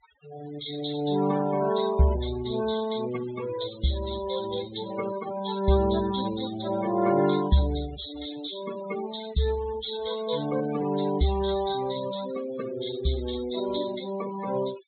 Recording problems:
low-pass filter; nothing above 4 kHz
denoising artefacts; signal-to-artefact ratio 13 dB

